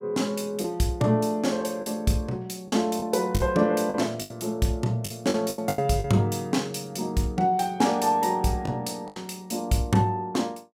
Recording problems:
packet loss; 6% of the sound replaced, filled with the last packet

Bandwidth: 16 kHz